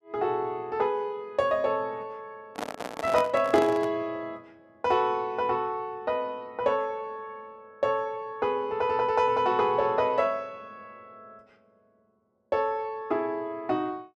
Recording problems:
microphone handling noise; from 2.5 to 4 s; peak -1 dB vs average level

